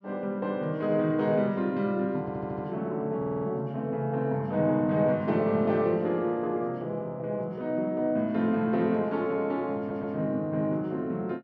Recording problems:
stutter; at 2 s, at 3 s and at 10 s

